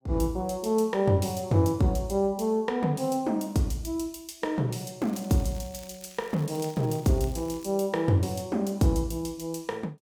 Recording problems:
crackle; from 5 to 7.5 s; loose cable, SNR 23 dB

